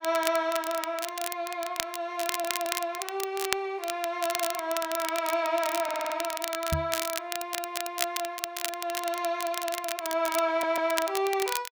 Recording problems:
crackle; vinyl, SNR 5 dB
stutter; 4 times, first at 2 s
microphone bump; at 6.5 s; peak +4 dB vs average level

